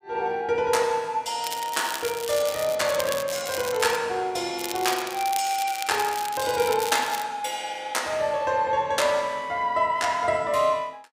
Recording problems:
crackle; from 1.5 to 4 s and from 4.5 to 7 s; loose cable, SNR 9 dB

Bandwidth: 15.5 kHz